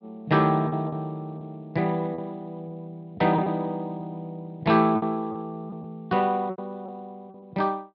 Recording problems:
low-pass filter; nothing above 5.5 kHz
lossy codec; Speex, log-spectral distance 2 dB
packet loss; 6% of the sound replaced, filled with repeated pitch periods

